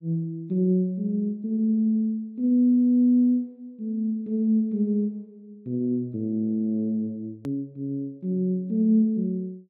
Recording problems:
edit click; at 7.5 s

